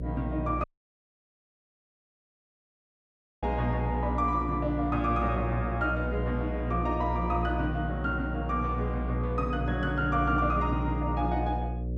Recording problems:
electrical hum; 60 Hz, harmonics up to 600 Hz, SNR 3 dB
dropout; at 0.5 s for 3 s

